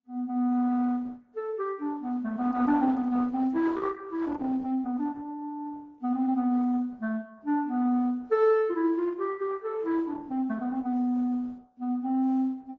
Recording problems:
codec artefacts; Opus, then AAC, log-spectral distance 2 dB

